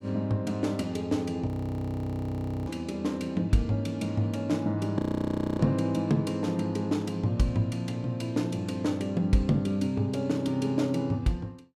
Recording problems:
frozen audio; at 1.5 s for 1 s and at 5 s for 0.5 s

